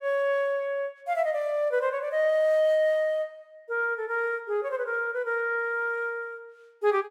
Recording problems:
none

